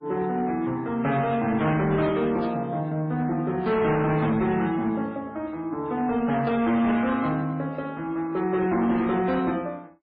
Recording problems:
codec artefacts; MP3, then MP3, log-spectral distance 2 dB
distortion; hard clipping, signal-to-distortion ratio 11 dB
static burst; at 2.5 s; peak -14 dB vs average level

